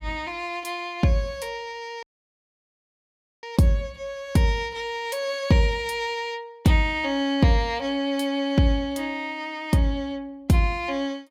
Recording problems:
dropout; at 2 s for 1.5 s

